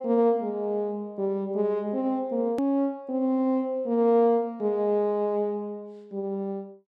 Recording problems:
hard cut with a click; at 2.5 s

